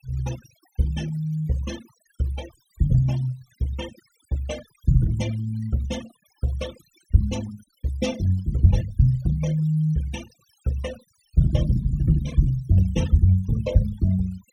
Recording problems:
denoising artefacts; signal-to-artefact ratio 16 dB

